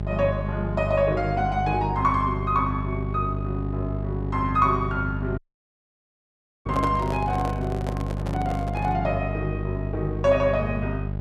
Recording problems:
hum; 50 Hz, harmonics up to 800 Hz, SNR 4 dB
audio cutting out; at 5.5 s for 1.5 s
microphone handling noise; from 6.5 to 9 s; peak 0 dB vs average level

